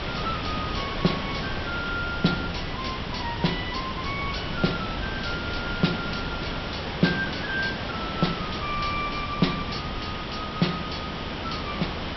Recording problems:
treble cut off; nothing above 5.7 kHz
hum; 50 Hz, harmonics up to 650 Hz, SNR 18 dB
hiss; SNR 2 dB
low-frequency rumble; below 130 Hz, SNR 10 dB

